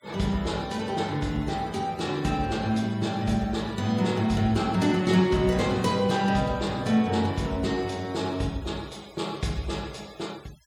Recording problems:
denoising artefacts; signal-to-artefact ratio 23 dB

